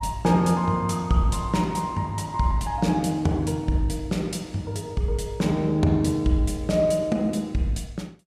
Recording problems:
none

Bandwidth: 14.5 kHz